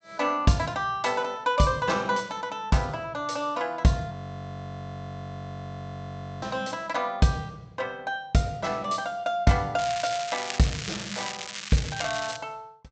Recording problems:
low-pass filter; nothing above 8 kHz
audio freezing; at 4 s for 2.5 s
crackling; from 10 to 12 s; loose cable, SNR 7 dB

